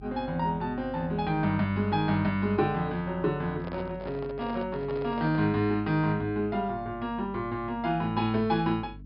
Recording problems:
treble cut off; nothing above 5.5 kHz
hum; 50 Hz, harmonics up to 300 Hz, SNR 19 dB
microphone handling noise; from 3.5 to 5.5 s; peak -8 dB vs average level

